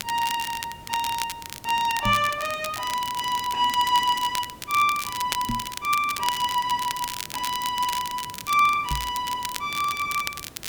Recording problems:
background hiss; slope -5 dB per octave, SNR 22 dB
crackling; vinyl, SNR 9 dB
microphone bump; at 2 s, at 5.5 s and at 9 s; peak -1 dB vs average level

